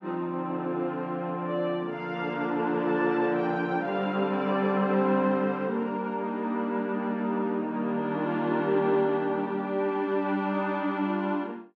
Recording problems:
none

